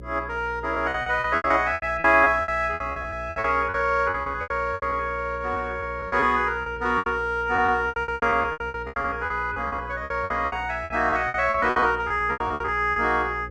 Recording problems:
hum; 60 Hz, harmonics up to 540 Hz, SNR 17 dB
packet loss; 20% of the sound replaced, filled with repeated pitch periods

